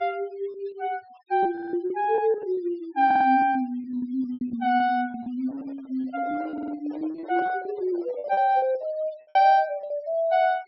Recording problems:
low-pass filter; nothing above 5.6 kHz
noise reduction artefacts; signal-to-artefact ratio 27 dB
lost packets; 14% of the sound replaced, filled with repeated pitch periods
stutter; at 1.5 s, at 3 s and at 6.5 s
handling noise; from 5.5 to 8.5 s; peak -11 dB vs average level

